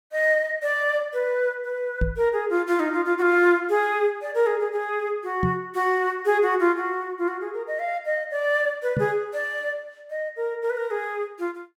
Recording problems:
knock on the microphone; at 2 s, at 5.5 s and at 9 s; peak +3 dB vs average level

